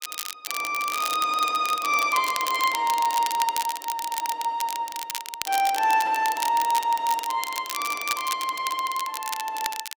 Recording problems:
crackling; vinyl, SNR 8 dB

